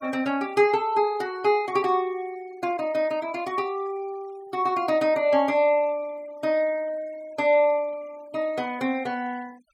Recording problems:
denoising artefacts; signal-to-artefact ratio 25 dB

